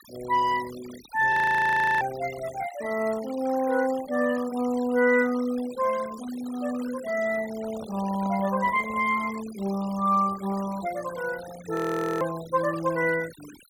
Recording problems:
noise reduction artefacts; signal-to-artefact ratio 18 dB
audio freezing; at 1.5 s for 0.5 s and at 12 s
handling noise; from 7.5 to 9 s; peak -10 dB vs average level

